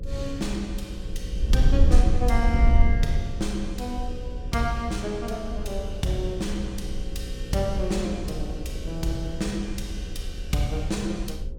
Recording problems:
electrical hum; 60 Hz, harmonics up to 540 Hz, SNR 12 dB
wind on the microphone; below 66 Hz, SNR 0 dB

